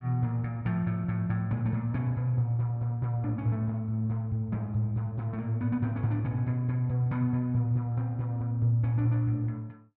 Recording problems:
none

